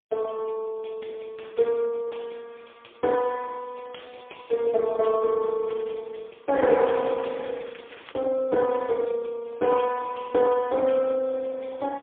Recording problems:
phone line; 300 Hz to 3.4 kHz, AMR-NB, then MP3
crackle; at 5.5 s and from 6.5 to 8 s; loose cable, SNR 24 dB

